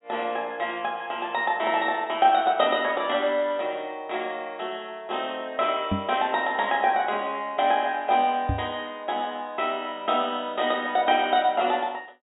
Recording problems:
low-pass filter; nothing above 4 kHz
microphone thump; at 6 s and at 8.5 s; peak +2 dB vs average level

